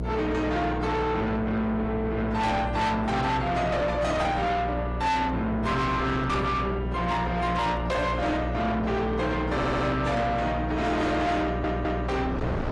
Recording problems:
lossy codec; AAC, log-spectral distance 2 dB, nothing above 10.7 kHz
distortion; soft clipping, signal-to-distortion ratio 8 dB
hum; 60 Hz, harmonics up to 780 Hz, SNR 5 dB
wind noise; below 820 Hz, SNR 16 dB
audio stuttering; at 9.5 s and at 11 s

